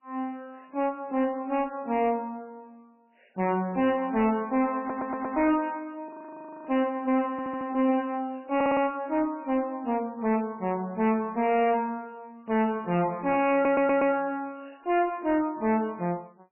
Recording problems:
codec artefacts; MP3, log-spectral distance 2 dB, nothing above 2.6 kHz
distortion; soft clipping, signal-to-distortion ratio 6 dB
audio stuttering; 4 times, first at 5 s
frozen audio; at 6 s for 0.5 s

